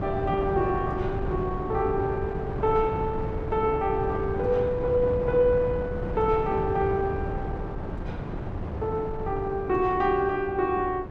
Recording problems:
wind noise; below 370 Hz, SNR 7 dB

